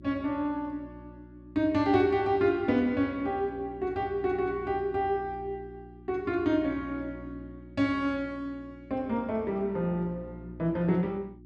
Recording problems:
hum; 60 Hz, harmonics up to 360 Hz, SNR 18 dB

